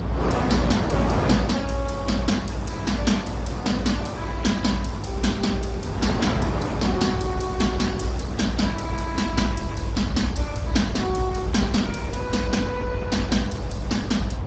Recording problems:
lossy codec; Speex, log-spectral distance 3 dB, nothing above 7.6 kHz
hum; 50 Hz, harmonics up to 800 Hz, SNR 11 dB
rumble; below 92 Hz, strongest tone 58 Hz, SNR 7 dB
wind on the microphone; below 920 Hz, SNR 4 dB

